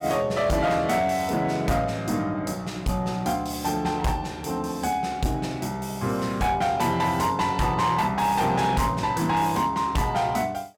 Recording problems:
distorted audio; hard clipping, uneven, signal-to-distortion ratio 11 dB

